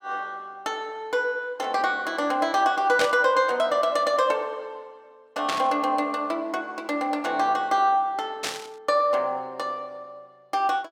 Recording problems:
burst of static; at 3 s, at 5.5 s and at 8.5 s; peak +1 dB vs average level

